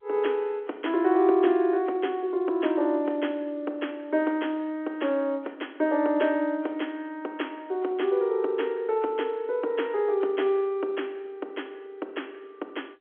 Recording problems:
telephone audio; 240 Hz to 3.4 kHz, G.711

